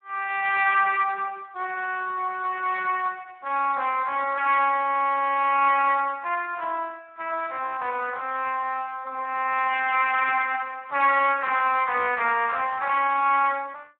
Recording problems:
phone line; 280 Hz to 3.6 kHz, Speex

